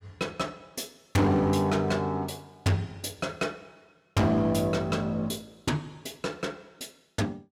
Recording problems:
distorted audio; hard clipping, signal-to-distortion ratio 7 dB

